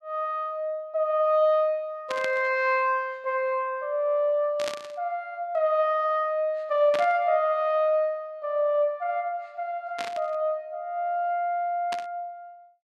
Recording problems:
static burst; 5 times, first at 2 s; peak -3 dB vs average level

